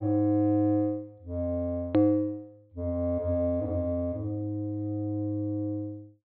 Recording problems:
low-pass filter; nothing above 4.3 kHz
edit click; at 2 s

